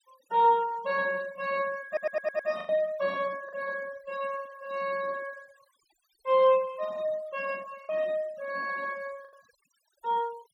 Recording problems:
denoising artefacts; signal-to-artefact ratio 23 dB
packet loss; 3% of the sound replaced, filled with the last packet
stutter; at 2 s

